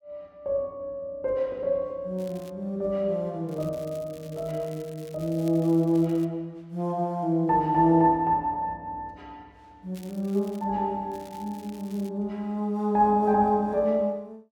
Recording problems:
crackle; 4 times, first at 2 s; loose cable, SNR 25 dB

